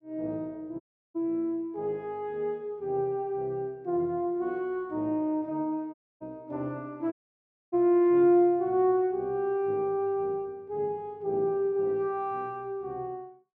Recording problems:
dropout; at 1 s, at 6 s and at 7 s for 0.5 s

